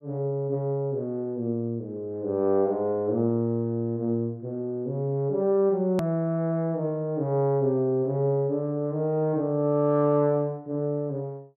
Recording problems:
click at an edit; at 6 s

